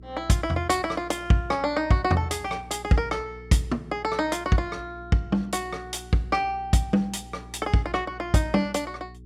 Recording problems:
hum; 60 Hz, harmonics up to 420 Hz, SNR 20 dB

